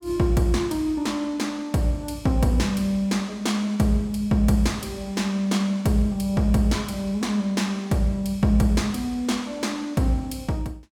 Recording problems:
none

